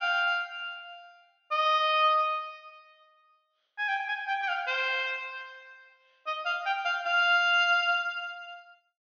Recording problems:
treble missing; nothing above 6.5 kHz

